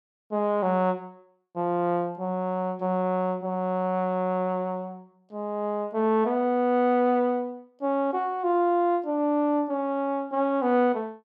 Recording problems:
none

